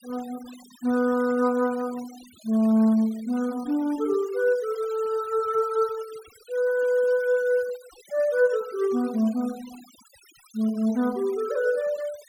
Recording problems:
denoising artefacts; signal-to-artefact ratio 23 dB

